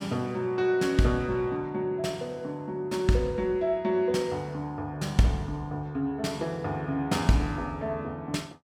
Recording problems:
none

